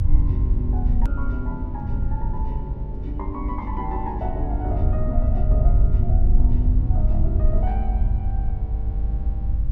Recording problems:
mains hum; 50 Hz, harmonics up to 1.1 kHz, SNR 7 dB
low-frequency rumble; below 70 Hz, SNR -8 dB
click at an edit; at 1 s

